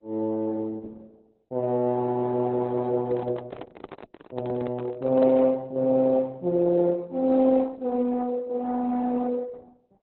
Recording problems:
lossy codec; Opus, then Opus, log-spectral distance 3 dB, nothing above 4 kHz
handling noise; from 3 to 5.5 s; peak -8 dB vs average level

